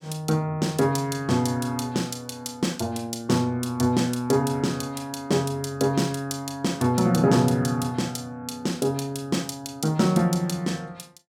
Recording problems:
none

